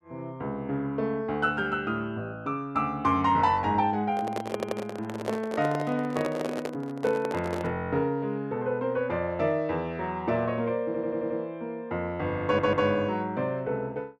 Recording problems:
microphone handling noise; from 4 to 7.5 s; peak +1 dB vs average level
audio stuttering; at 4.5 s, at 11 s and at 12 s

